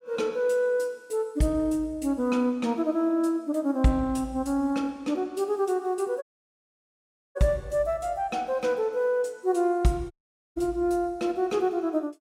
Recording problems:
dropout; at 6 s for 1 s and at 10 s

